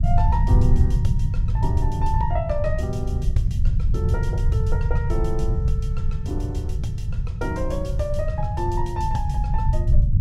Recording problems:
rumble; below 100 Hz, SNR -6 dB

